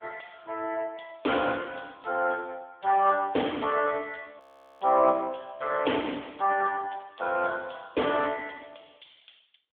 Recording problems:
telephone audio; 280 Hz to 3.4 kHz, AMR-NB
audio freezing; at 4.5 s

